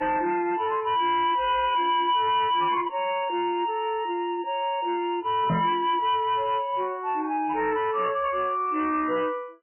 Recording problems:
codec artefacts; MP3, log-spectral distance 3 dB, nothing above 2.5 kHz
distortion; hard clipping, signal-to-distortion ratio 11 dB
knock on the microphone; at 5.5 s; peak +3 dB vs average level

